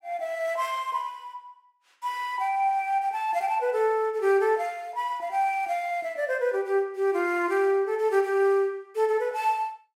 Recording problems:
none

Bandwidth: 16 kHz